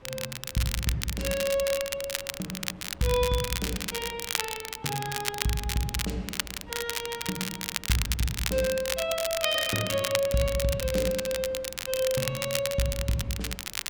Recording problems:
wind on the microphone; below 830 Hz, SNR 21 dB
crackle; vinyl, SNR 3 dB

